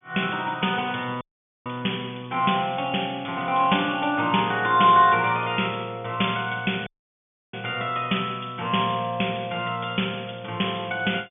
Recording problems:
treble missing; nothing above 3.5 kHz
audio cutting out; at 1 s and at 7 s for 0.5 s

